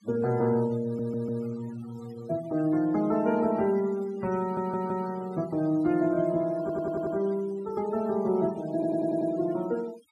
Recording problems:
denoising artefacts; signal-to-artefact ratio 21 dB
stutter; 4 times, first at 1 s

